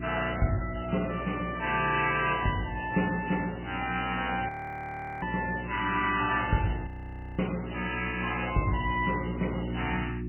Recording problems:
lossy compression; MP3, log-spectral distance 12 dB, nothing above 3 kHz
mains hum; 60 Hz, harmonics up to 360 Hz, SNR 9 dB
frozen audio; at 4.5 s for 0.5 s and at 7 s for 0.5 s

